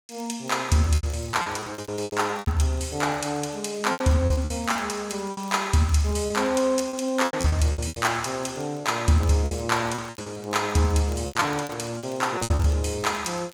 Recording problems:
crackle; vinyl, SNR 27 dB
lost packets; 14% of the sound replaced, filled with repeated pitch periods

